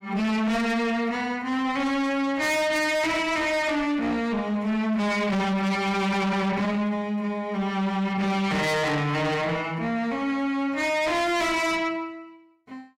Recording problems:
distortion; soft clipping, signal-to-distortion ratio 7 dB

